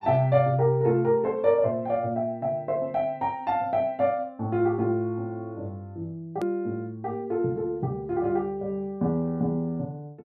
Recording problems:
edit click; at 6.5 s

